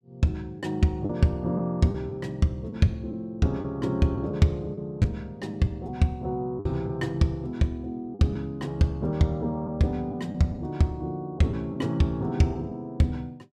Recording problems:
packet loss; 3% of the sound replaced, filled with the last packet

